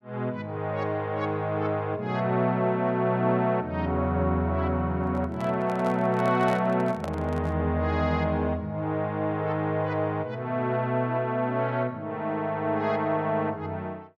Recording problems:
handling noise; from 5 to 7.5 s; peak -3 dB vs average level

